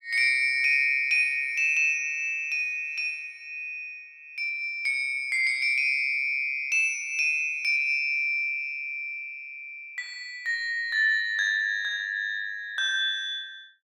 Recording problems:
none

